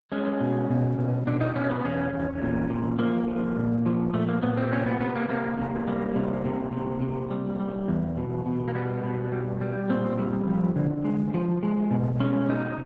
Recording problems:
lossy codec; Opus, log-spectral distance 3 dB

